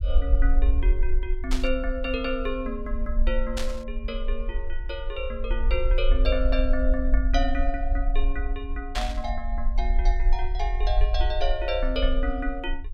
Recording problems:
low-frequency rumble; below 46 Hz, strongest tone 22 Hz, SNR -3 dB
static burst; at 1.5 s, at 3.5 s and at 9 s; peak +3 dB vs average level

